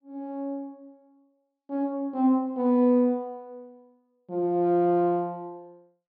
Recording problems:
low-pass filter; nothing above 5.5 kHz

